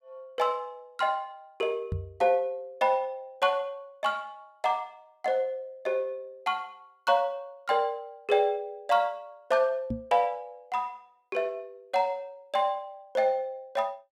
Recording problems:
microphone thump; at 2 s and at 10 s; peak 0 dB vs average level

